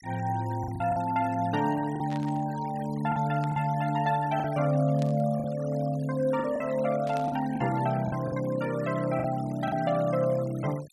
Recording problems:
denoising artefacts; signal-to-artefact ratio 19 dB
lost packets; 6% of the sound replaced, filled with the last packet
burst of static; 4 times, first at 2 s; peak -12 dB vs average level

